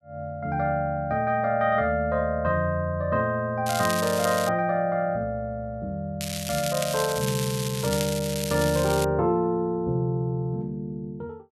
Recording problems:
crackle; at 3.5 s and from 6 to 9 s; loose cable, SNR 7 dB

